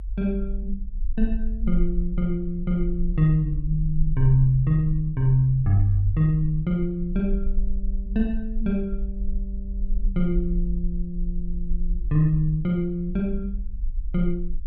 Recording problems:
low-frequency rumble; below 46 Hz, strongest tone 18 Hz, SNR 7 dB

